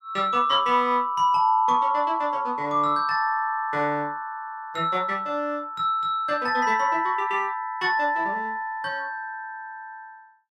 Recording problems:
none

